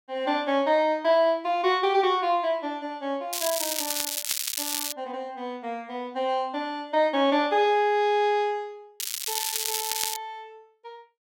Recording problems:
crackling; from 3.5 to 5 s and from 9 to 10 s; loose cable, SNR 2 dB

